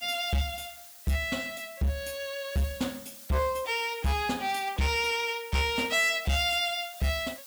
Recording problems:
distortion; hard clipping, signal-to-distortion ratio 12 dB
hiss; slope +3 dB per octave, SNR 17 dB

